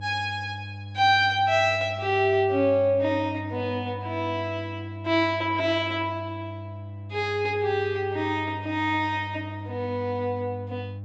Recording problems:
low-pass filter; nothing above 8 kHz
electrical hum; 50 Hz, harmonics up to 500 Hz, SNR 12 dB

